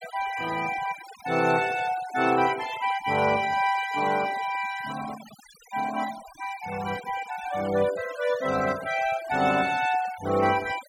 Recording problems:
noise reduction artefacts; signal-to-artefact ratio 15 dB

